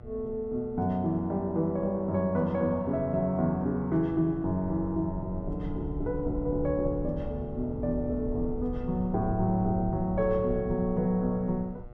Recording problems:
electrical hum; 60 Hz, harmonics up to 2.2 kHz, SNR 24 dB
rumble; below 100 Hz, SNR 11 dB

